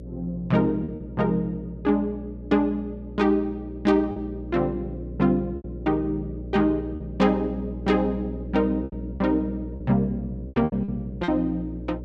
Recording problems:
hum; 60 Hz, harmonics up to 600 Hz, SNR 11 dB
lost packets; 5% of the sound replaced, filled with repeated pitch periods

